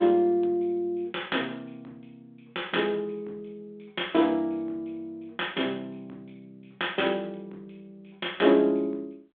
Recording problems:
telephone audio; 260 Hz to 3.5 kHz, G.726

